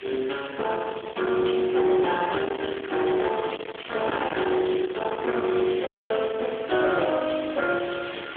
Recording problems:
phone line; 280 Hz to 3.5 kHz, AMR-NB
distortion; soft clipping, signal-to-distortion ratio 10 dB
background hiss; SNR 15 dB
wind noise; below 1 kHz, SNR 13 dB
audio cutting out; at 6 s

